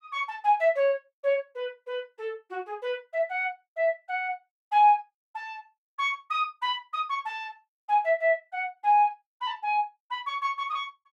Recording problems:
none

